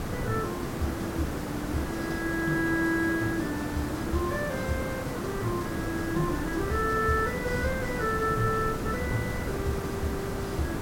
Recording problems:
hiss; slope -7 dB per octave, SNR 3 dB
wind noise; below 150 Hz, SNR 13 dB

